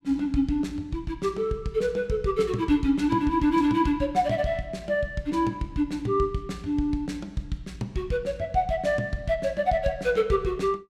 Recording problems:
none

